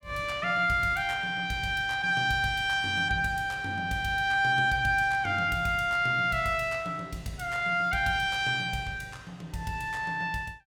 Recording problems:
none

